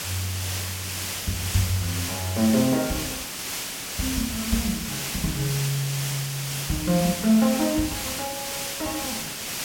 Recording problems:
hiss; slope 0 dB per octave, SNR 3 dB

